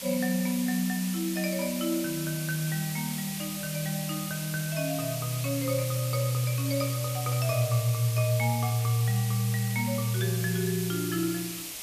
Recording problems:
background hiss; SNR 6 dB

